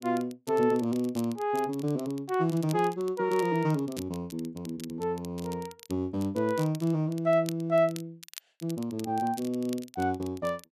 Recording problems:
crackling; vinyl, SNR 19 dB

